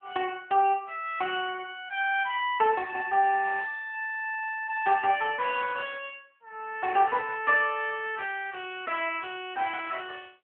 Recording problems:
phone line; 280 Hz to 3.3 kHz, AMR-NB

